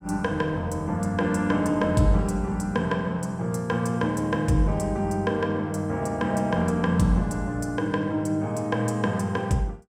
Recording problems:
none

